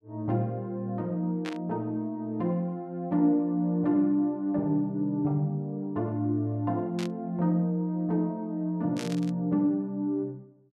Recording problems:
static burst; at 1.5 s, at 7 s and at 9 s; peak -5 dB vs average level

